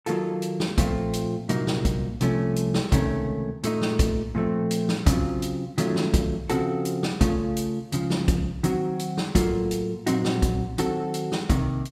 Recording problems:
none

